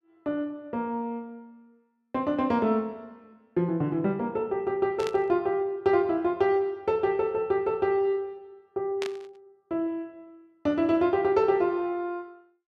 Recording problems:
burst of static; at 5 s and at 9 s; peak -4 dB vs average level

